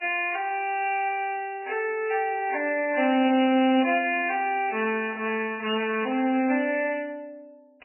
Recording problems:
lossy codec; MP3, log-spectral distance 4 dB, nothing above 2.4 kHz

